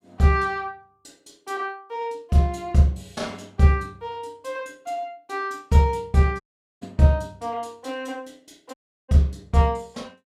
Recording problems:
dropout; at 6.5 s and at 8.5 s

